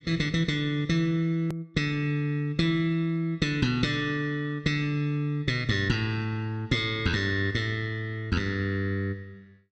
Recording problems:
click at an edit; at 1.5 s

